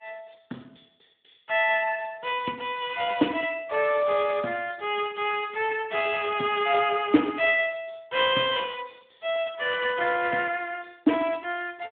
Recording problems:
telephone audio; 190 Hz to 3.4 kHz, Speex

